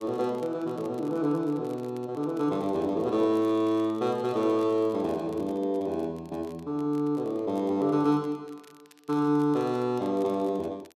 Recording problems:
crackle; vinyl, SNR 30 dB

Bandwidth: 13.5 kHz